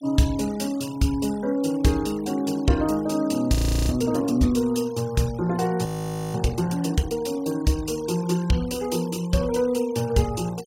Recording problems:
denoising artefacts; signal-to-artefact ratio 20 dB
audio freezing; at 3.5 s and at 6 s

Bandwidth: 16.5 kHz